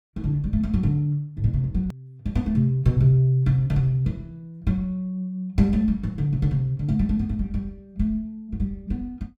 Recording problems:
edit click; at 2 s

